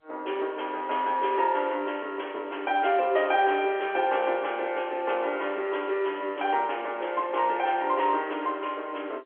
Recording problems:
telephone audio; 320 Hz to 3.3 kHz, G.711

